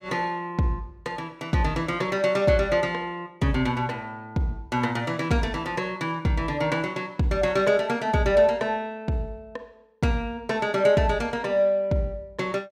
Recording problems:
none

